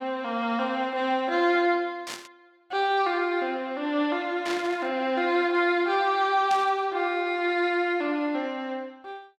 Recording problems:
burst of static; at 2 s, at 4.5 s and at 6.5 s; peak -4 dB vs average level

